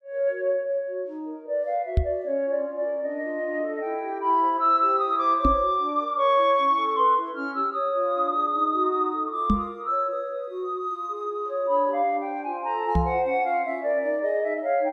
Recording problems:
knock on the microphone; 4 times, first at 2 s; peak +6 dB vs average level

